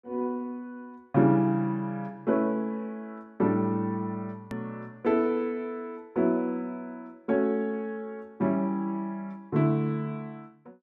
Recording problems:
hard cut with a click; at 4.5 s

